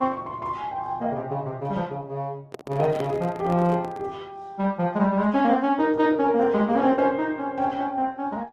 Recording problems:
lossy compression; Opus, log-spectral distance 2 dB
microphone handling noise; from 2.5 to 4 s; peak -4 dB vs average level

